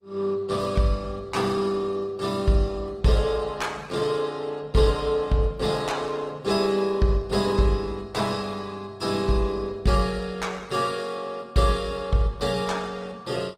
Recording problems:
lossy codec; Opus, log-spectral distance 3 dB, nothing above 16.5 kHz

